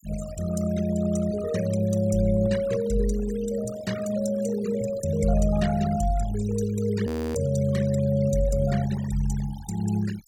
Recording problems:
noise reduction artefacts; signal-to-artefact ratio 14 dB
audio freezing; at 7 s

